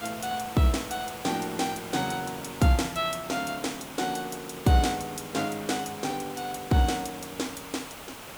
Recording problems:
hiss; slope -3 dB per octave, SNR 12 dB

